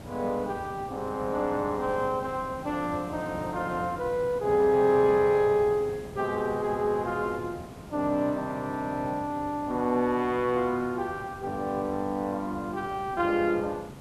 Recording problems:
hiss; slope -7 dB per octave, SNR 15 dB

